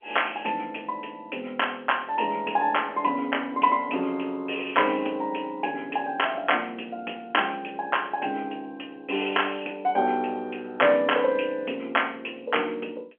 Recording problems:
phone line; 220 Hz to 3.3 kHz, G.711

